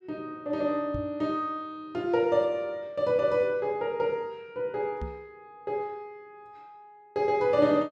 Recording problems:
knock on the microphone; at 1 s and at 5 s; peak -4 dB vs average level

